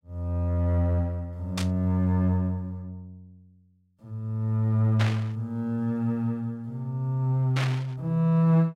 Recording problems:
static burst; at 1.5 s, at 5 s and at 7.5 s; peak 0 dB vs average level

